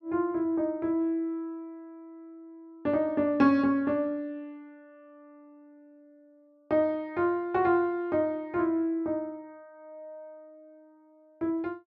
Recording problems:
none

